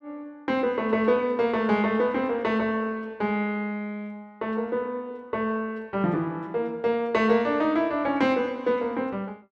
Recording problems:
none

